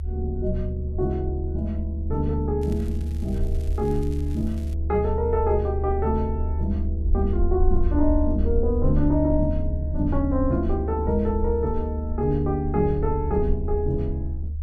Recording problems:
rumble; below 76 Hz, SNR 2 dB
crackle; from 2.5 to 4.5 s; loose cable, SNR 26 dB

